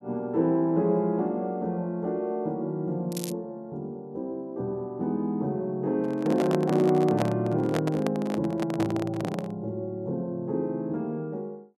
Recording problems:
crackling; at 3 s; loose cable, SNR 12 dB
microphone handling noise; from 6 to 9.5 s; peak +2 dB vs average level

